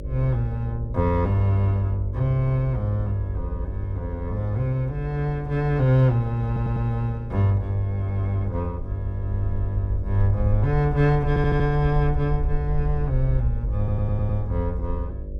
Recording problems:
hum; 50 Hz, harmonics up to 600 Hz, SNR 14 dB
low-frequency rumble; below 64 Hz, SNR 8 dB
audio stuttering; at 6.5 s, at 11 s and at 14 s

